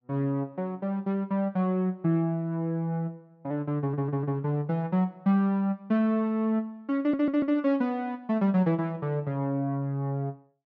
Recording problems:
stutter; at 4 s and at 7 s

